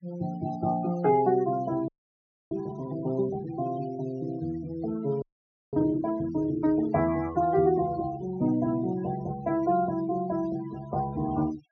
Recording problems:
treble missing; nothing above 6.4 kHz
denoising artefacts; signal-to-artefact ratio 18 dB
audio freezing; at 2 s for 0.5 s and at 5 s for 0.5 s

